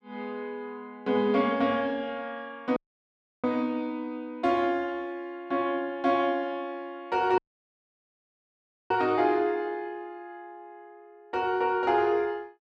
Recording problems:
audio cutting out; at 3 s for 0.5 s and at 7.5 s for 1.5 s

